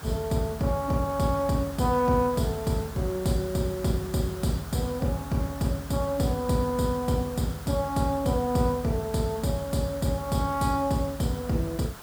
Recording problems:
background hiss; SNR 16 dB

